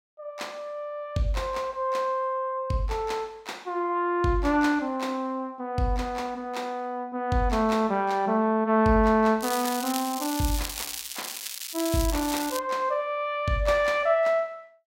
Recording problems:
crackling; from 9.5 to 13 s; loose cable, SNR 7 dB

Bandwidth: 16 kHz